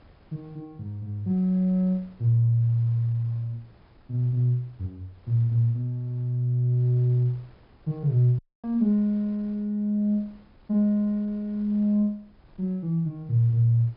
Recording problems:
low-pass filter; nothing above 5.5 kHz
wind noise; below 490 Hz, SNR 31 dB
dropout; at 8.5 s

